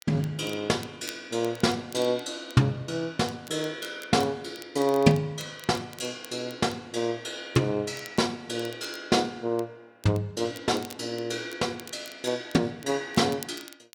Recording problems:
crackle; vinyl, SNR 20 dB

